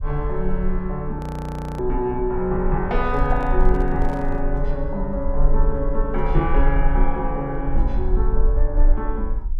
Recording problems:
rumble; below 42 Hz, strongest tone 20 Hz, SNR 1 dB
frozen audio; at 1 s for 0.5 s
handling noise; from 3 to 4.5 s; peak -9 dB vs average level

